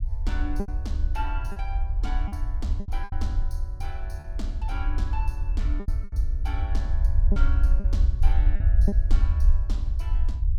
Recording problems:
low-frequency rumble; below 62 Hz, SNR -13 dB
packet loss; 7% of the sound replaced, filled with repeated pitch periods

